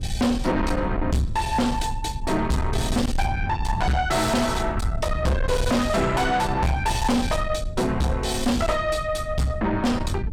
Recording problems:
distortion; soft clipping, signal-to-distortion ratio 5 dB
rumble; below 150 Hz, SNR 6 dB

